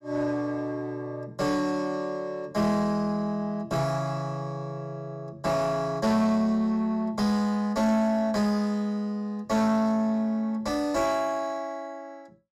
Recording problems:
distorted audio; soft clipping, signal-to-distortion ratio 10 dB

